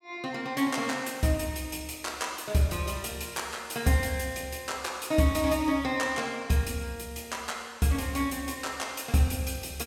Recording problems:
none

